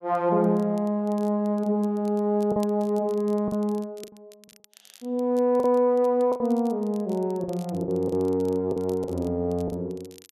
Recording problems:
crackle; vinyl, SNR 28 dB
packet loss; 6% of the sound replaced, filled with the last packet

